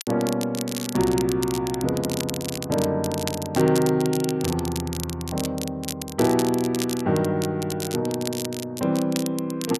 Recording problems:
crackling; vinyl, SNR 9 dB

